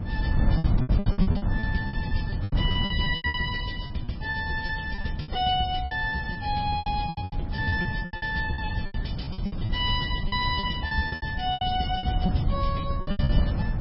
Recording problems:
codec artefacts; MP3, log-spectral distance 3 dB, nothing above 5.3 kHz
wind on the microphone; below 160 Hz, SNR 0 dB
lost packets; 19% of the sound replaced, filled with repeated pitch periods

